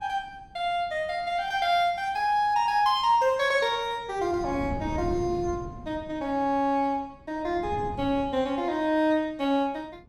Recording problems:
wind on the microphone; below 250 Hz, SNR 13 dB

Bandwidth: 16 kHz